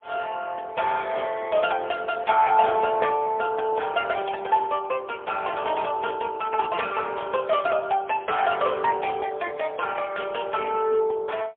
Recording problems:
telephone audio; 340 Hz to 3.3 kHz, AMR-NB, then MP3

